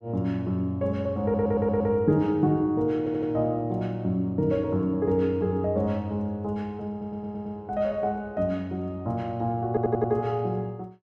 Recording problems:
audio stuttering; 4 times, first at 1 s

